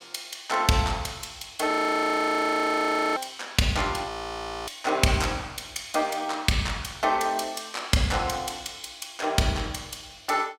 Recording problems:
audio freezing; at 1.5 s for 1.5 s and at 4 s for 0.5 s

